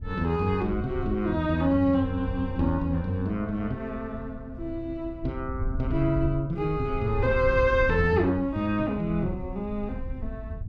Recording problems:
wind noise; below 86 Hz, SNR 10 dB

